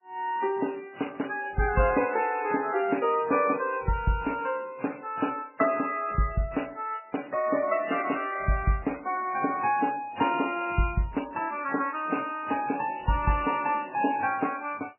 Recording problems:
lossy codec; MP3, then AAC, log-spectral distance 5 dB, nothing above 2.5 kHz

